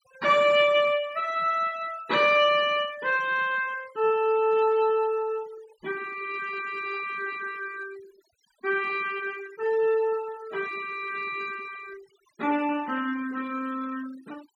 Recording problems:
noise reduction artefacts; signal-to-artefact ratio 22 dB

